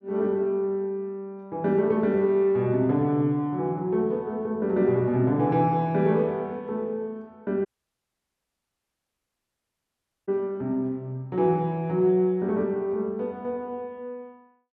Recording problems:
audio cutting out; at 7.5 s for 2.5 s

